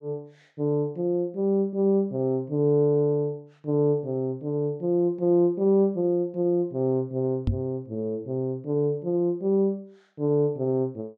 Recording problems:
knock on the microphone; at 7.5 s; peak +3 dB vs average level

